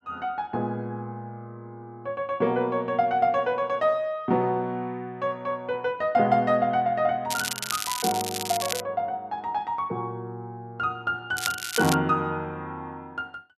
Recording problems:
crackling; from 7.5 to 9 s and at 11 s; loose cable, SNR 4 dB

